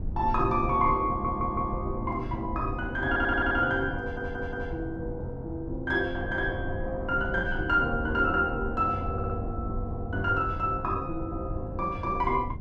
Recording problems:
low-frequency rumble; below 110 Hz, SNR 9 dB
audio stuttering; 4 times, first at 1 s

